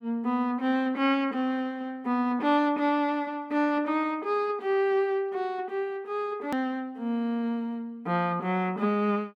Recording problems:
click at an edit; at 6.5 s

